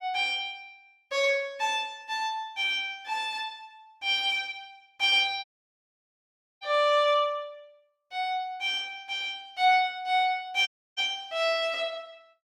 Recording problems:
dropout; at 5.5 s for 1 s and at 11 s

